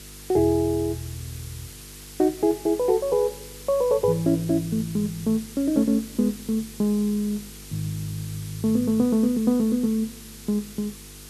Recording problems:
hum; 50 Hz, harmonics up to 500 Hz, SNR 23 dB
background hiss; slope +2 dB per octave, SNR 17 dB

